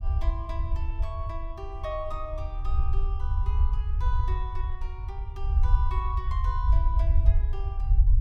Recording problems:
rumble; below 68 Hz, SNR -10 dB

